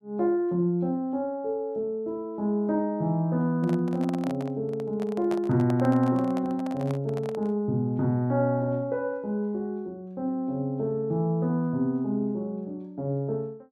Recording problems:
handling noise; from 3.5 to 7.5 s; peak -5 dB vs average level

